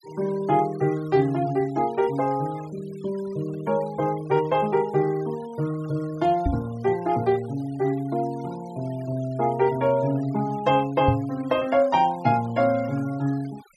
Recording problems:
denoising artefacts; signal-to-artefact ratio 22 dB
knock on the microphone; at 6.5 s and at 11 s; peak +6 dB vs average level

